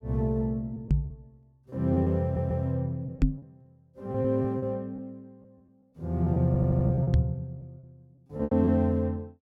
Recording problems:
lost packets; 9% of the sound replaced, filled with repeated pitch periods
microphone thump; at 1 s, at 3 s and at 7 s; peak +7 dB vs average level
audio stuttering; at 2 s and at 6.5 s

